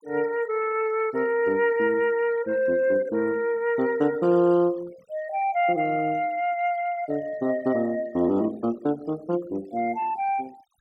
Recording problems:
denoising artefacts; signal-to-artefact ratio 24 dB

